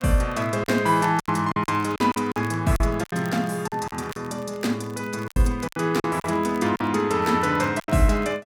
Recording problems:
crackle; vinyl, SNR 25 dB
lost packets; 11% of the sound replaced, filled with silence

